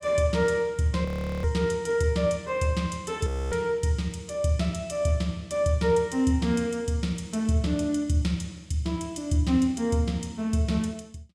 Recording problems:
audio freezing; at 1 s and at 3.5 s

